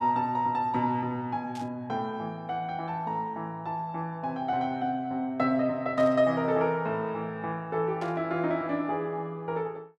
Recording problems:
static burst; at 1.5 s, at 6 s and at 8 s; peak -13 dB vs average level

